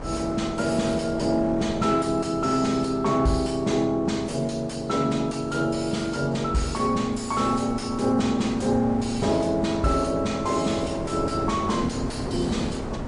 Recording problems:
codec artefacts; MP3, log-spectral distance 3 dB, nothing above 10.1 kHz
distortion; soft clipping, signal-to-distortion ratio 11 dB
wind noise; below 570 Hz, SNR 12 dB

